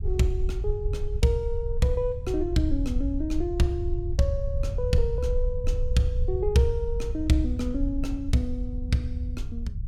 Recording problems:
low-frequency rumble; below 70 Hz, SNR 3 dB

